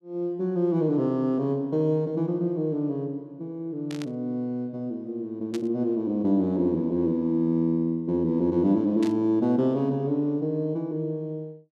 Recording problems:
static burst; at 4 s, at 5.5 s and at 9 s; peak -10 dB vs average level

